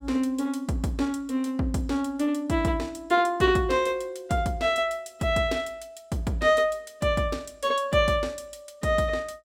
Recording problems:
none

